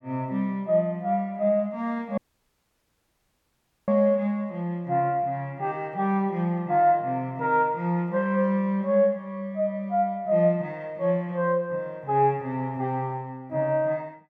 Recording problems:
dropout; at 2 s for 1.5 s

